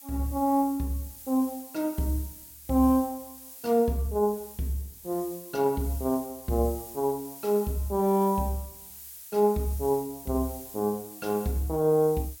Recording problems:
background hiss; slope +3 dB per octave, SNR 15 dB

